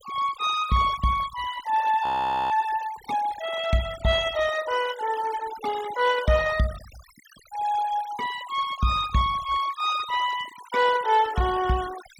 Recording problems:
noise reduction artefacts; signal-to-artefact ratio 16 dB
frozen audio; at 2 s

